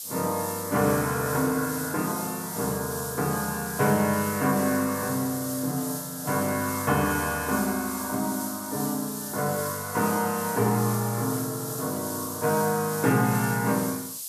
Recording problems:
hiss; SNR 7 dB

